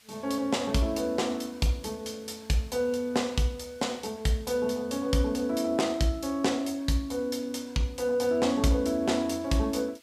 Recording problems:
hiss; slope +2 dB per octave, SNR 28 dB

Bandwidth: 15.5 kHz